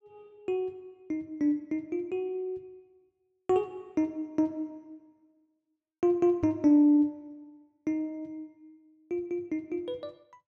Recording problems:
knock on the microphone; at 6.5 s; peak -4 dB vs average level

